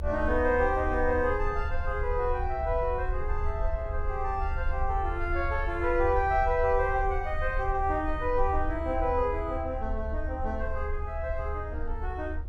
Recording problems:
low-frequency rumble; below 72 Hz, strongest tone 20 Hz, SNR 6 dB

